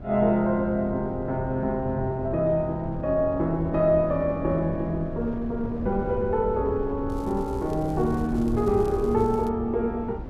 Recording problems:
hum; 60 Hz, harmonics up to 1.1 kHz, SNR 22 dB
wind noise; below 200 Hz, SNR 11 dB
crackling; from 7 to 9.5 s; loose cable, SNR 28 dB

